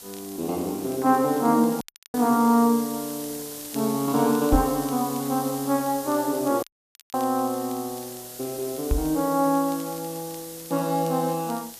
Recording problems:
background hiss; SNR 12 dB
crackling; vinyl, SNR 27 dB
dropout; at 2 s and at 6.5 s for 0.5 s
knock on the microphone; at 4.5 s and at 9 s; peak +5 dB vs average level

